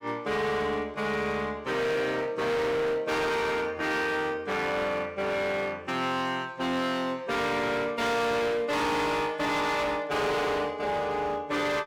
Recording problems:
distorted audio; hard clipping, signal-to-distortion ratio 8 dB

